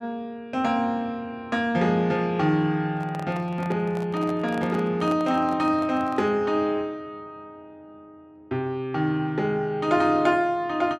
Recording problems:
handling noise; from 3 to 6.5 s; peak -8 dB vs average level

